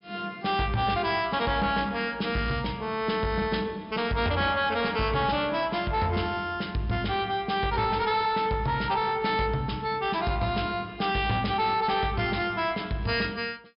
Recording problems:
low-pass filter; nothing above 5.5 kHz
distortion; soft clipping, signal-to-distortion ratio 11 dB

